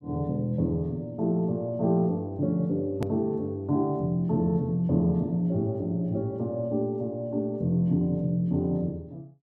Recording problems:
edit click; at 3 s

